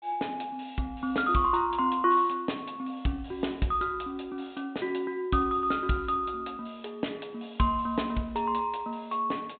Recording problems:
treble missing; nothing above 4 kHz

